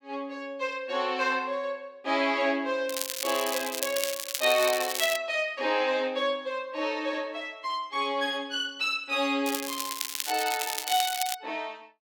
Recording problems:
crackling; from 3 to 5 s and from 9.5 to 11 s; loose cable, SNR 3 dB

